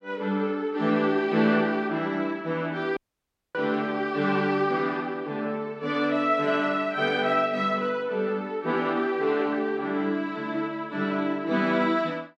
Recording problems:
audio cutting out; at 3 s for 0.5 s

